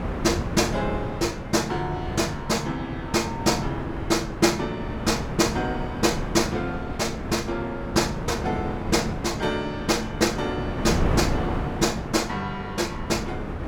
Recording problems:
wind noise; below 520 Hz, SNR 5 dB

